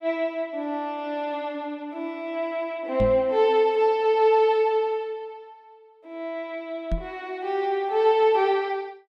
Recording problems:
microphone thump; at 3 s and at 7 s; peak 0 dB vs average level

